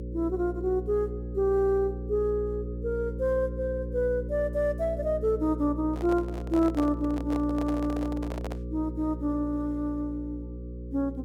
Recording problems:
hum; 60 Hz, harmonics up to 540 Hz, SNR 7 dB
microphone handling noise; from 6 to 8.5 s; peak -4 dB vs average level

